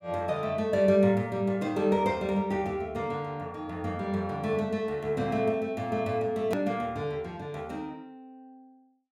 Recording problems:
edit click; at 6.5 s

